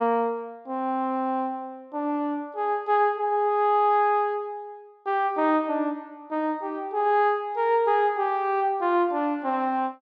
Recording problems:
none

